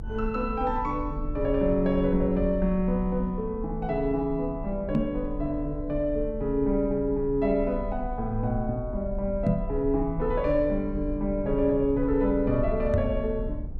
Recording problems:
low-frequency rumble; below 56 Hz, strongest tone 32 Hz, SNR 10 dB
knock on the microphone; at 5 s, at 9.5 s and at 13 s; peak +5 dB vs average level

